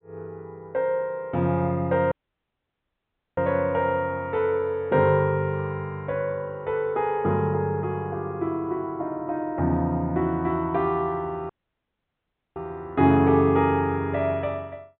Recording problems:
low-pass filter; nothing above 4 kHz
audio cutting out; at 2 s for 1.5 s and at 12 s for 1 s

